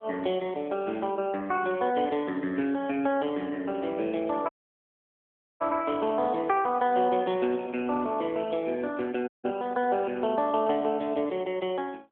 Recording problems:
phone line; 220 Hz to 3.4 kHz, AMR-NB
audio cutting out; at 4.5 s for 1 s and at 9.5 s

